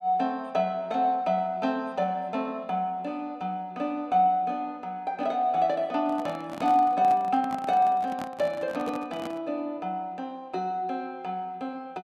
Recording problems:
microphone handling noise; from 6 to 9.5 s; peak -6 dB vs average level

